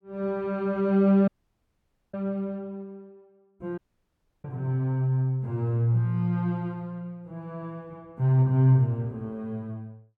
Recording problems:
audio cutting out; at 1.5 s for 1 s and at 4 s for 0.5 s

